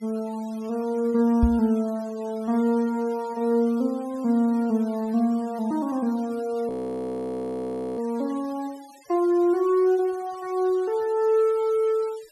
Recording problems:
denoising artefacts; signal-to-artefact ratio 26 dB
knock on the microphone; at 1.5 s; peak +6 dB vs average level
audio freezing; at 6.5 s for 1.5 s

